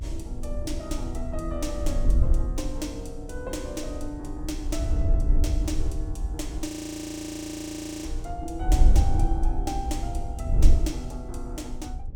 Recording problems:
electrical hum; 50 Hz, harmonics up to 600 Hz, SNR 22 dB
rumble; below 62 Hz, strongest tone 20 Hz, SNR 6 dB
wind noise; below 64 Hz, SNR -6 dB
audio freezing; at 6.5 s for 1.5 s

